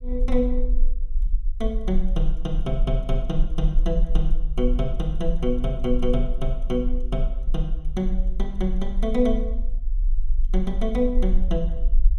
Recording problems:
rumble; below 40 Hz, strongest tone 20 Hz, SNR 0 dB

